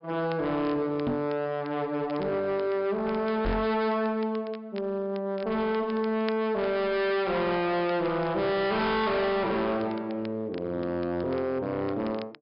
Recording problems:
low-pass filter; nothing above 5.5 kHz
distortion; hard clipping, uneven, signal-to-distortion ratio 7 dB
crackle; vinyl, SNR 24 dB
microphone bump; at 1 s and at 3.5 s; peak +2 dB vs average level

